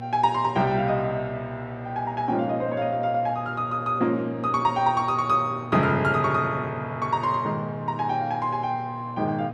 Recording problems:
hum; 60 Hz, harmonics up to 1.6 kHz, SNR 12 dB

